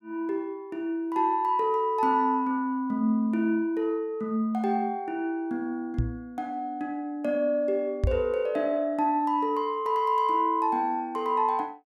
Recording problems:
knock on the microphone; at 6 s and at 8 s; peak +5 dB vs average level

